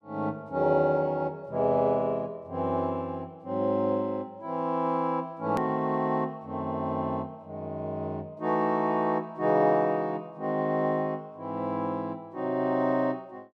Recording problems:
click at an edit; at 5.5 s

